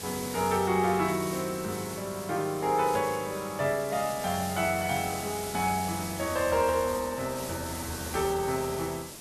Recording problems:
background hiss; SNR 9 dB

